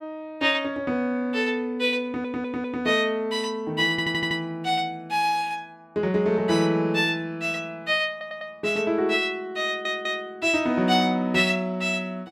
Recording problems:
audio stuttering; 4 times, first at 2 s

